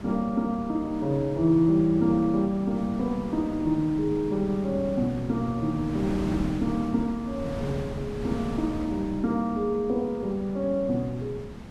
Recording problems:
wind noise; below 340 Hz, SNR 11 dB

